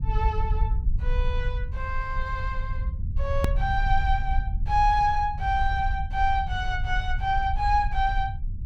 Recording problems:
low-frequency rumble; below 68 Hz, SNR 3 dB
edit click; at 3.5 s

